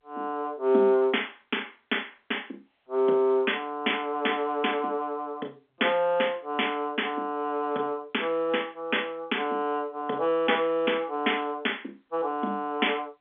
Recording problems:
phone line; 240 Hz to 3.5 kHz, G.711

